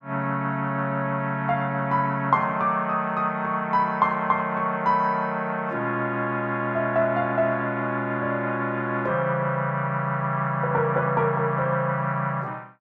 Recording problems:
none

